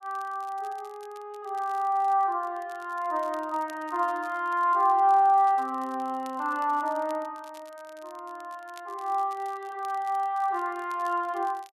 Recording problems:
crackling; vinyl, SNR 28 dB

